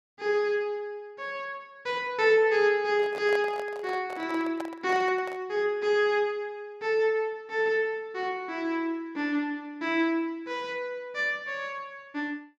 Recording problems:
handling noise; from 3 to 5.5 s; peak -5 dB vs average level

